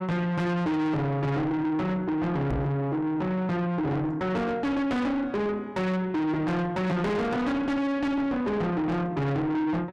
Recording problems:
distorted audio; soft clipping, signal-to-distortion ratio 6 dB
microphone thump; at 2.5 s; peak +5 dB vs average level

